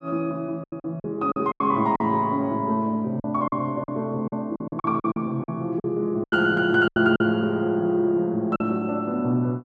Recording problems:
lost packets; 10% of the sound replaced, filled with silence

